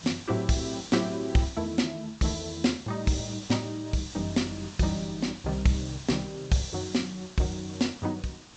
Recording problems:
treble cut off; nothing above 8 kHz
hiss; SNR 17 dB

